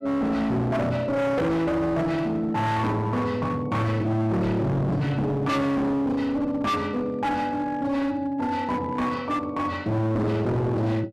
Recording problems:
distorted audio; hard clipping, signal-to-distortion ratio 7 dB

